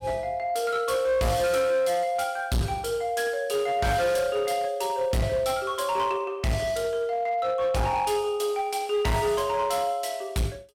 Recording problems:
distortion; hard clipping, uneven, signal-to-distortion ratio 10 dB

